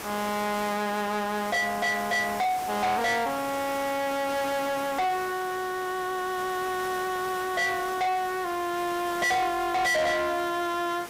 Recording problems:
distorted audio; soft clipping, signal-to-distortion ratio 6 dB
background hiss; slope -3 dB per octave, SNR 12 dB

